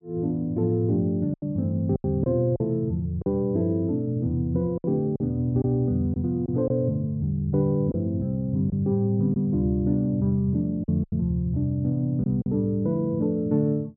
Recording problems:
lost packets; 5% of the sound replaced, filled with silence

